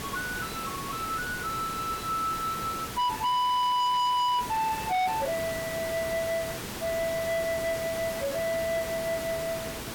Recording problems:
distorted audio; soft clipping, signal-to-distortion ratio 7 dB
hiss; slope -3 dB per octave, SNR 7 dB

